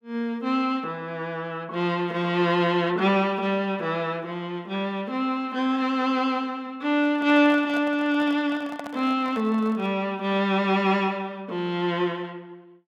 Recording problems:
microphone handling noise; from 7 to 10 s; peak -7 dB vs average level

